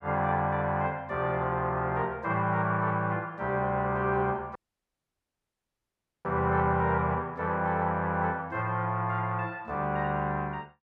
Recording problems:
audio cutting out; at 4.5 s for 1.5 s

